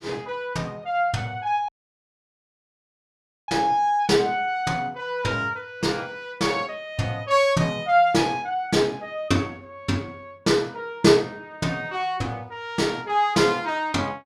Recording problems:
audio cutting out; at 1.5 s for 2 s

